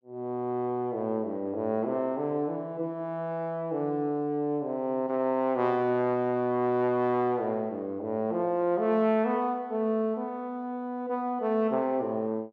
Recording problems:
none

